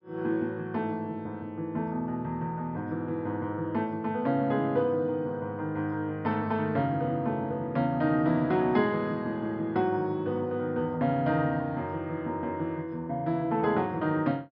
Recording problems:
treble cut off; nothing above 5.5 kHz

